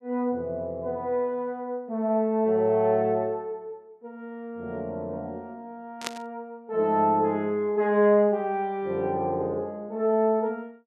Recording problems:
static burst; at 6 s; peak -1 dB vs average level

